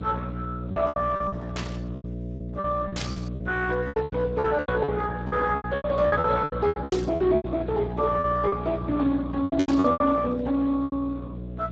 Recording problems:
lossy compression; Speex, log-spectral distance 3 dB
hum; 60 Hz, harmonics up to 660 Hz, SNR 9 dB
packet loss; 16% of the sound replaced, filled with repeated pitch periods
burst of static; 4 times, first at 1.5 s; peak -3 dB vs average level

